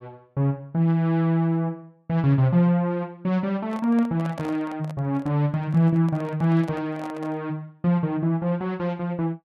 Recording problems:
microphone handling noise; from 3.5 to 7.5 s; peak -10 dB vs average level

